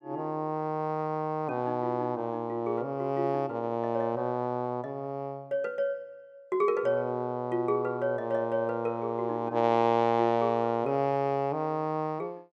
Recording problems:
none

